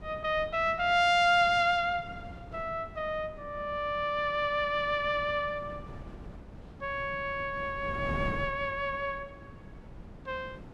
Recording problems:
wind noise; below 290 Hz, SNR 16 dB

